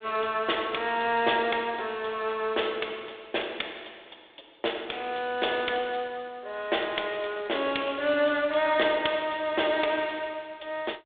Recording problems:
telephone audio; 300 Hz to 3.6 kHz, G.726

